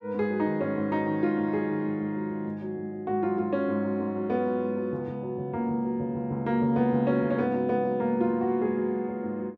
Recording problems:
none

